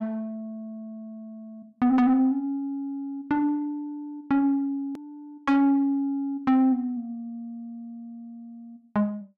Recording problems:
distortion; soft clipping, signal-to-distortion ratio 11 dB
click at an edit; at 5 s

